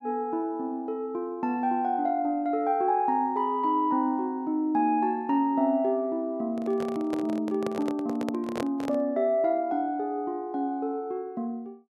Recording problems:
microphone handling noise; from 6.5 to 9 s; peak -1 dB vs average level

